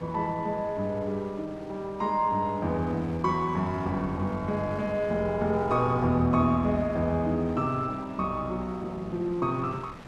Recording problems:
wind noise; below 1.3 kHz, SNR 18 dB

